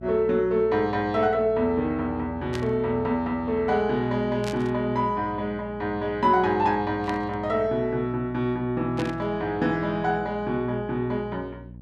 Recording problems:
mains hum; 60 Hz, harmonics up to 540 Hz, SNR 17 dB
burst of static; 4 times, first at 2.5 s; peak -6 dB vs average level

